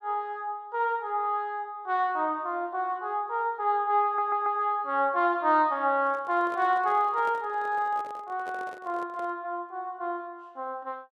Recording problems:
audio stuttering; at 4 s
microphone handling noise; from 6 to 9.5 s; peak -11 dB vs average level

